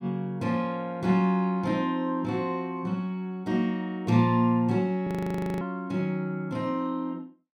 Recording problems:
frozen audio; at 5 s for 0.5 s

